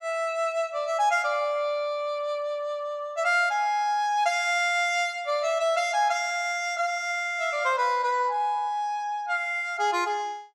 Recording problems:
none

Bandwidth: 15.5 kHz